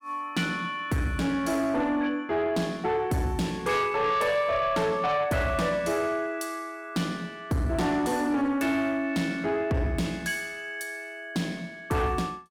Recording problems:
distorted audio; soft clipping, signal-to-distortion ratio 11 dB

